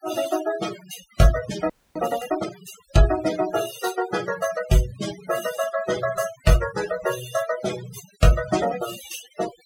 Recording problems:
noise reduction artefacts; signal-to-artefact ratio 11 dB
audio freezing; at 1.5 s

